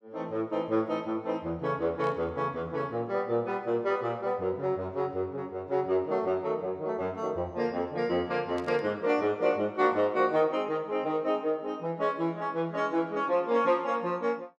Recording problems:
burst of static; at 2 s and at 8.5 s; peak -14 dB vs average level

